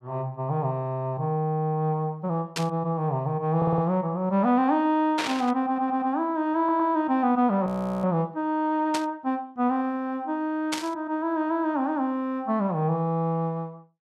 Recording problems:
static burst; 4 times, first at 2.5 s; peak +1 dB vs average level
audio stuttering; at 3.5 s, at 5.5 s and at 6.5 s
frozen audio; at 7.5 s

